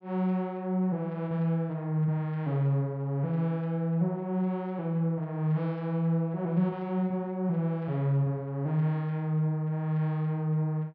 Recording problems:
low-pass filter; nothing above 6.3 kHz

